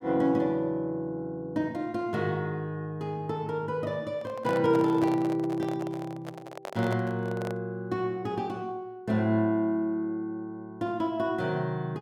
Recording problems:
microphone handling noise; from 4 to 7.5 s; peak -4 dB vs average level

